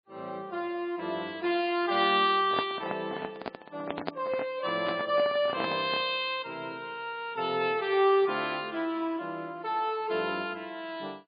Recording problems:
lossy codec; MP3, log-spectral distance 3 dB, nothing above 4.2 kHz
handling noise; from 2.5 to 6 s; peak +1 dB vs average level

